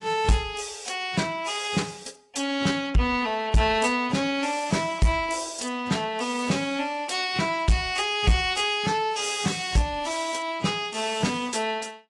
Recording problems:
lossy compression; AAC, log-spectral distance 4 dB, nothing above 10.4 kHz
distortion; soft clipping, signal-to-distortion ratio 10 dB

